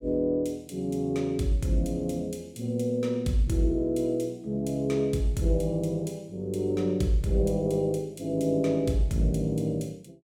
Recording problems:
none

